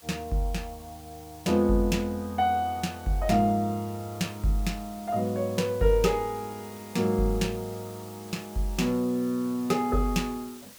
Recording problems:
hiss; slope 0 dB per octave, SNR 20 dB

